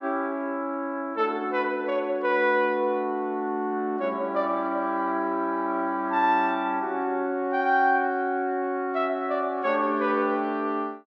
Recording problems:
none

